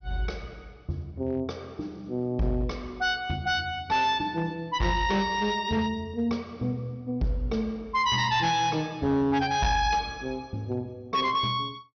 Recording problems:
treble cut off; nothing above 6.2 kHz
distorted audio; hard clipping, signal-to-distortion ratio 10 dB

